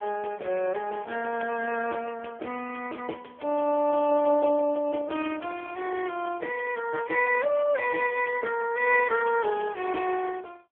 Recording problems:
phone line; 260 Hz to 2.6 kHz, AMR-NB

